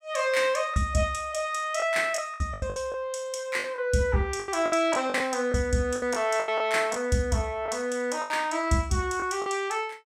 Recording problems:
packet loss; 9% of the sound replaced, filled with the last packet

